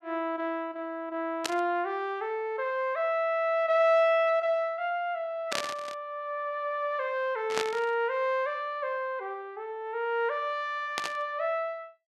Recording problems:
burst of static; 4 times, first at 1.5 s; peak +3 dB vs average level

